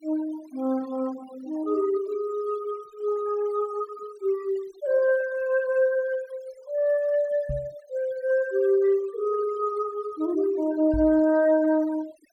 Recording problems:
noise reduction artefacts; signal-to-artefact ratio 23 dB
microphone thump; at 7.5 s and at 11 s; peak -3 dB vs average level

